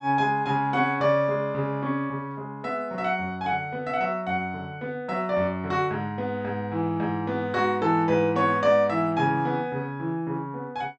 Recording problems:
treble cut off; nothing above 7.9 kHz

